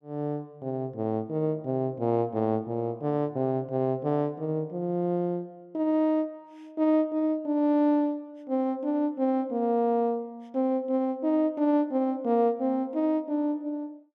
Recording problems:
none

